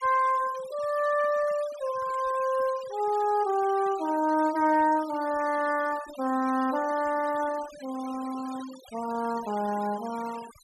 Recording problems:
denoising artefacts; signal-to-artefact ratio 18 dB

